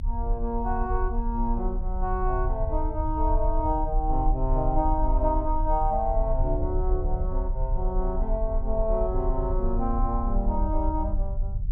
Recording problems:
rumble; below 48 Hz, strongest tone 28 Hz, SNR 1 dB

